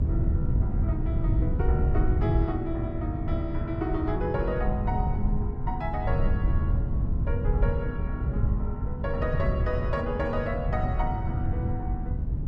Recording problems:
hum; 50 Hz, harmonics up to 300 Hz, SNR 7 dB
wind on the microphone; below 110 Hz, SNR -4 dB

